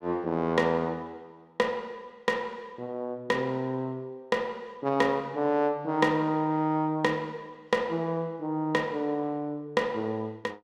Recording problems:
none

